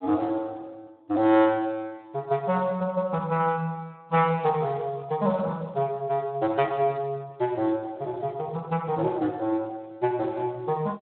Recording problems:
phone line; 150 Hz to 3.6 kHz, Speex

